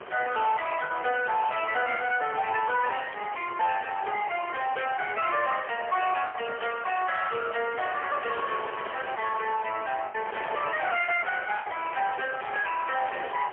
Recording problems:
phone line; 340 Hz to 3.2 kHz, AMR-NB, then MP3
distorted audio; soft clipping, signal-to-distortion ratio 11 dB
wind noise; below 1.8 kHz, SNR 12 dB
lost packets; 3% of the sound replaced, filled with the last packet

